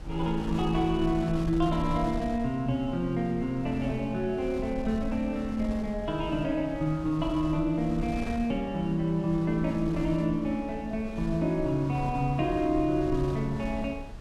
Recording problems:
wind noise; below 120 Hz, SNR 12 dB

